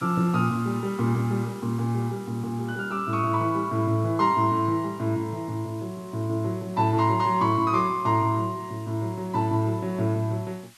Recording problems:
background hiss; SNR 25 dB

